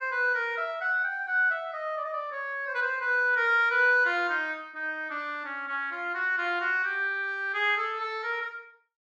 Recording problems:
none

